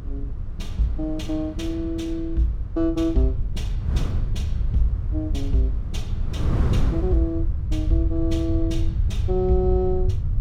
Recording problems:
low-frequency rumble; below 88 Hz, SNR 2 dB
wind noise; below 170 Hz, SNR 7 dB

